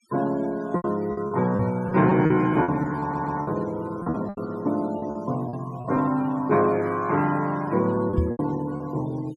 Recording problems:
denoising artefacts; signal-to-artefact ratio 22 dB
lost packets; 10% of the sound replaced, filled with repeated pitch periods
microphone bump; at 1.5 s and at 8 s; peak +5 dB vs average level
audio stuttering; at 3 s

